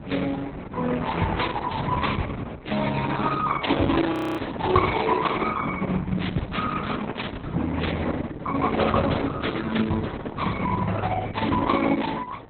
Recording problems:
lossy codec; Opus, then Opus, log-spectral distance 5 dB, nothing above 4 kHz
wind noise; below 490 Hz, SNR 11 dB
audio freezing; at 4 s

